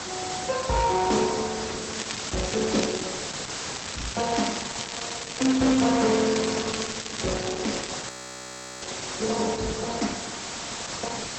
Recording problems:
lossy codec; Opus, log-spectral distance 20 dB, nothing above 7.6 kHz
distorted audio; hard clipping, uneven, signal-to-distortion ratio 11 dB
hiss; slope -1 dB per octave, SNR 4 dB
crackle; from 2 to 3 s, from 4 to 6 s and from 6 to 8 s; loose cable, SNR 8 dB
audio freezing; at 8 s for 0.5 s

